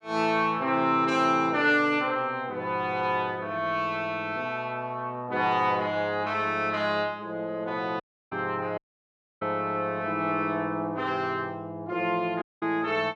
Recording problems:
dropout; at 8 s, at 9 s for 0.5 s and at 12 s

